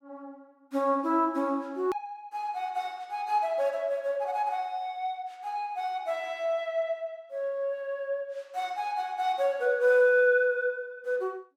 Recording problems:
hard cut with a click; at 2 s

